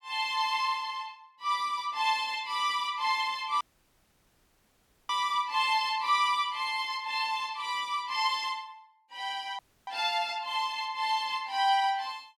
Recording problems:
dropout; at 3.5 s for 1.5 s and at 9.5 s

